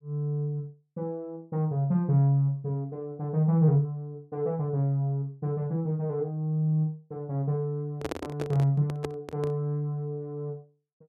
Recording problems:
microphone handling noise; from 8 to 9.5 s; peak 0 dB vs average level

